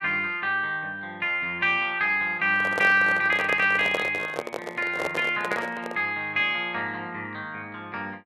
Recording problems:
microphone handling noise; from 2.5 to 6 s; peak 0 dB vs average level

